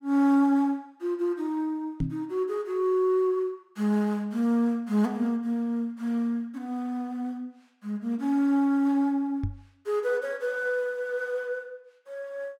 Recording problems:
knock on the microphone; at 2 s and at 9.5 s; peak +2 dB vs average level

